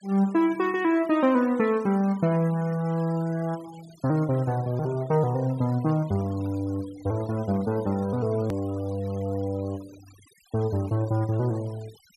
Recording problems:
noise reduction artefacts; signal-to-artefact ratio 23 dB
edit click; at 8.5 s

